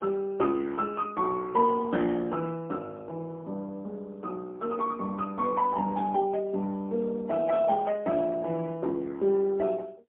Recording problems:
phone line; 150 Hz to 3.3 kHz, AMR-NB, then MP3

